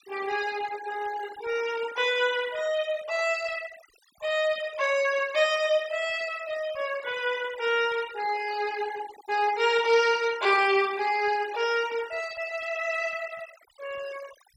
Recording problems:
noise reduction artefacts; signal-to-artefact ratio 17 dB

